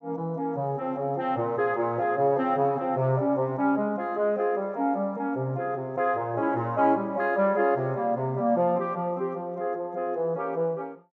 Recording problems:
treble cut off; nothing above 8 kHz

